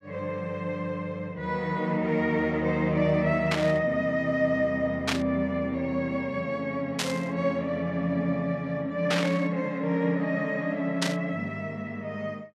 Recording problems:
burst of static; 5 times, first at 3.5 s; peak +4 dB vs average level

